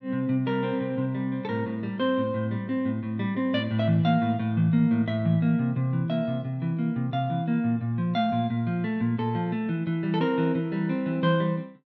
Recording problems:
none

